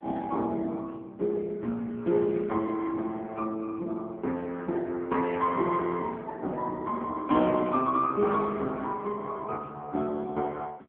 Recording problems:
phone line; 170 Hz to 3.6 kHz, AMR-NB

